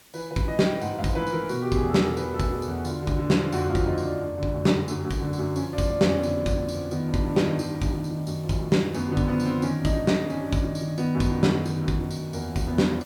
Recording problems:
hiss; slope -1 dB per octave, SNR 27 dB

